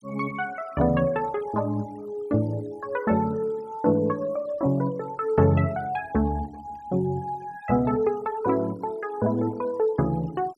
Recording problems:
noise reduction artefacts; signal-to-artefact ratio 24 dB

